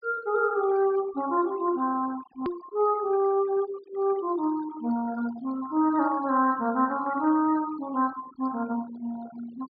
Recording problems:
low-pass filter; nothing above 5 kHz
noise reduction artefacts; signal-to-artefact ratio 19 dB
edit click; at 2.5 s

